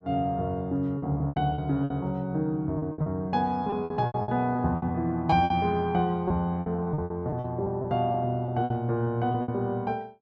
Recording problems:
packet loss; 14% of the sound replaced, filled with repeated pitch periods

